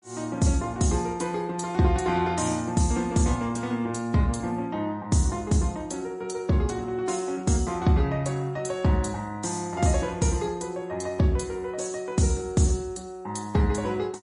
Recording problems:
lossy codec; MP3, log-spectral distance 3 dB, nothing above 10.1 kHz

